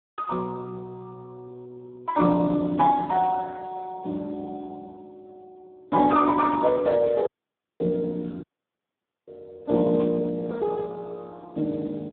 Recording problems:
telephone audio; 130 Hz to 2.3 kHz, Speex
static burst; at 6.5 s and at 10 s; peak -16 dB vs average level
audio cutting out; at 7.5 s for 0.5 s and at 8.5 s for 1 s

